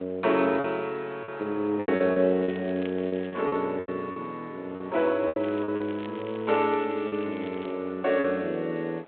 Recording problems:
telephone audio; 300 Hz to 3.6 kHz, G.726
wind on the microphone; below 1.4 kHz, SNR 23 dB
lost packets; 9% of the sound replaced, filled with repeated pitch periods
crackle; from 2.5 to 3.5 s and from 5.5 to 7.5 s; loose cable, SNR 22 dB

